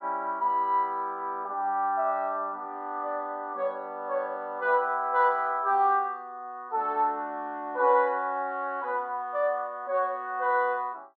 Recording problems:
none

